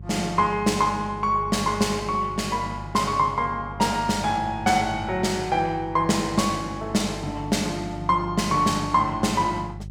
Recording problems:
hum; 50 Hz, harmonics up to 400 Hz, SNR 14 dB

